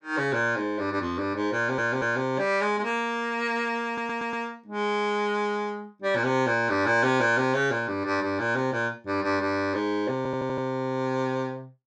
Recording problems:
stutter; at 1.5 s, at 4 s and at 10 s

